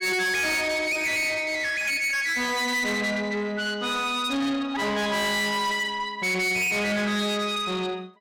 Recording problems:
distorted audio; soft clipping, signal-to-distortion ratio 8 dB

